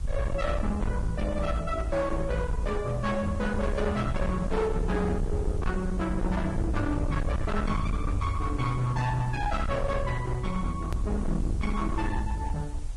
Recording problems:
lossy codec; Vorbis, log-spectral distance 2 dB
distortion; hard clipping, uneven, signal-to-distortion ratio 7 dB
background hiss; slope -3 dB per octave, SNR 22 dB
rumble; below 88 Hz, SNR 3 dB
click at an edit; at 11 s

